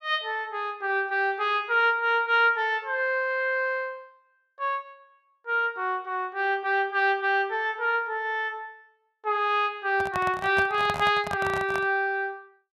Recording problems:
microphone handling noise; from 10 to 12 s; peak -3 dB vs average level

